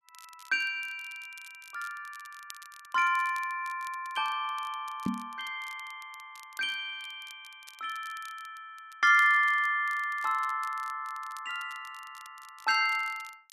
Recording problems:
crackle; vinyl, SNR 24 dB
microphone bump; at 5 s; peak +1 dB vs average level

